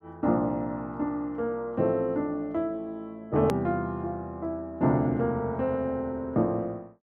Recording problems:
click at an edit; at 3.5 s

